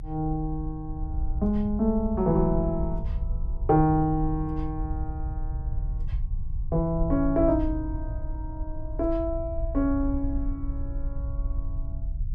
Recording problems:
low-frequency rumble; below 64 Hz, SNR 6 dB

